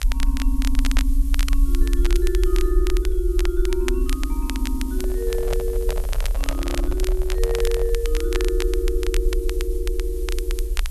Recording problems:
background hiss; SNR 16 dB
low-frequency rumble; below 54 Hz, SNR -3 dB
crackle; vinyl, SNR 7 dB
handling noise; from 5 to 8 s; peak +1 dB vs average level

